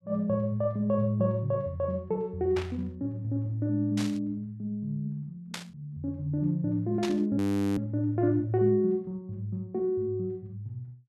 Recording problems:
static burst; 4 times, first at 2.5 s; peak -2 dB vs average level
audio freezing; at 7.5 s

